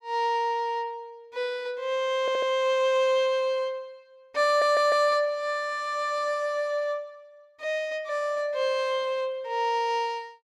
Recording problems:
audio stuttering; at 2 s and at 4.5 s

